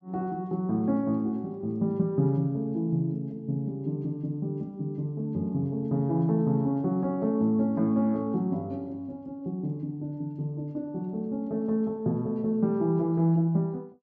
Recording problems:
low-pass filter; nothing above 8 kHz

